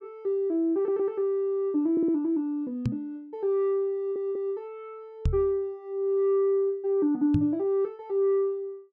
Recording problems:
audio stuttering; at 1 s, at 2 s and at 4 s
knock on the microphone; at 3 s, at 5.5 s and at 7.5 s; peak +4 dB vs average level

